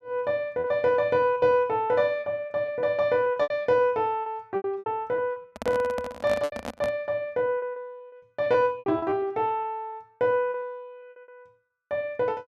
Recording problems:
lost packets; 13% of the sound replaced, filled with repeated pitch periods
microphone handling noise; from 5.5 to 7 s; peak -3 dB vs average level

